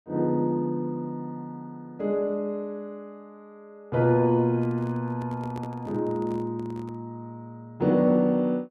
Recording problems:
microphone handling noise; from 4.5 to 7 s; peak -10 dB vs average level

